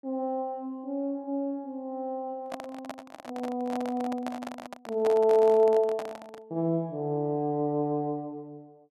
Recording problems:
handling noise; from 2.5 to 6.5 s; peak -3 dB vs average level

